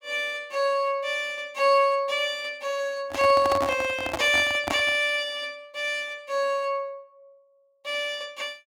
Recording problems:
handling noise; from 3 to 5 s; peak 0 dB vs average level

